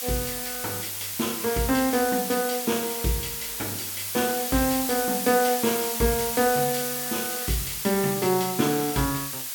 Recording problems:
hiss; slope +3 dB per octave, SNR 2 dB

